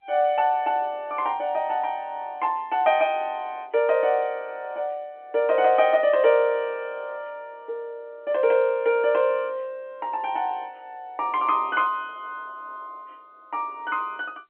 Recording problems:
phone line; 260 Hz to 3.6 kHz, G.711

